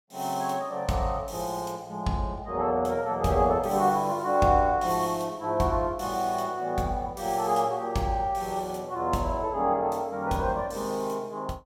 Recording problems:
none

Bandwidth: 16 kHz